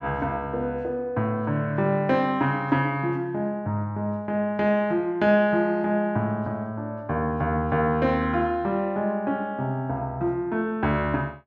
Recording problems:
none

